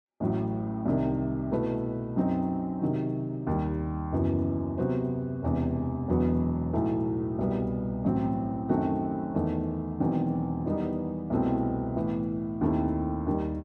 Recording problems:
none

